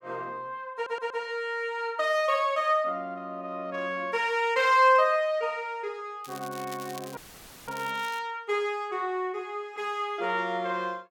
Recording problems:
stutter; at 1 s
crackle; from 6 to 8 s; loose cable, SNR 18 dB
audio cutting out; at 7 s for 0.5 s; filled with static

